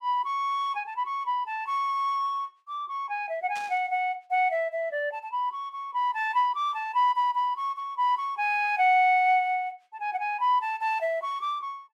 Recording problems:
burst of static; at 3.5 s; peak -11 dB vs average level

